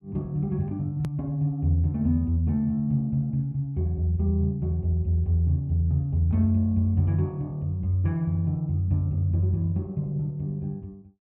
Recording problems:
click at an edit; at 1 s

